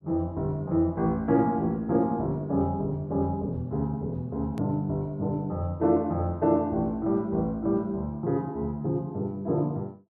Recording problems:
edit click; at 4.5 s

